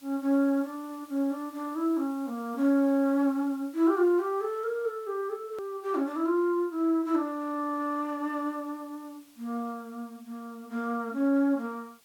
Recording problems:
background hiss; slope 0 dB per octave, SNR 28 dB
click at an edit; at 5.5 s

